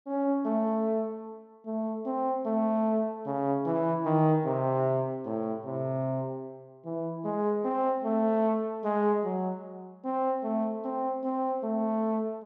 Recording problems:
none

